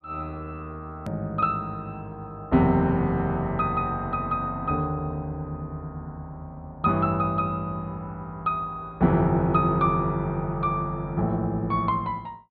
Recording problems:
treble missing; nothing above 4.6 kHz
edit click; at 1 s

